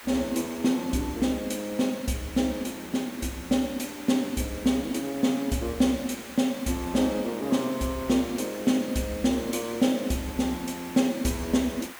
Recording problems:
background hiss; SNR 15 dB

